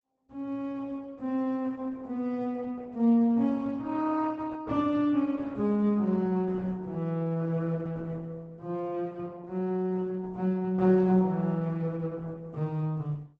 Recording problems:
codec artefacts; Opus, log-spectral distance 2 dB

